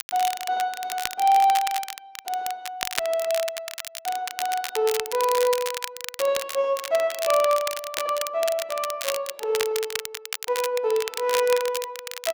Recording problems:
crackling; vinyl, SNR 7 dB

